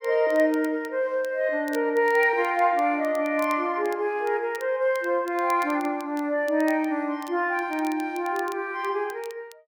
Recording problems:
crackle; vinyl, SNR 24 dB

